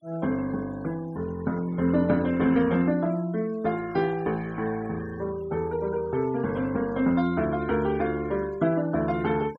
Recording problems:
denoising artefacts; signal-to-artefact ratio 23 dB

